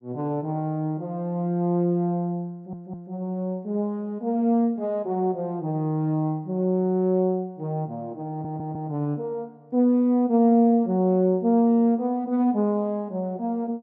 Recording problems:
audio stuttering; at 2.5 s and at 8.5 s

